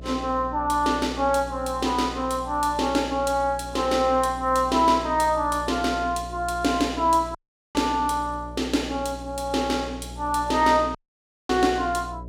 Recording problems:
electrical hum; 60 Hz, harmonics up to 660 Hz, SNR 16 dB
audio cutting out; at 7.5 s and at 11 s for 0.5 s

